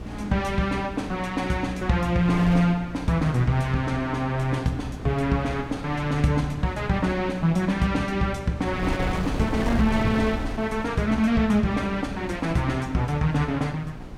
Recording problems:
electrical hum; 60 Hz, harmonics up to 780 Hz, SNR 18 dB
wind noise; below 420 Hz, SNR 12 dB

